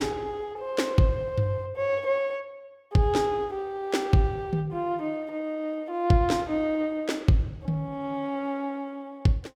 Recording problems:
none

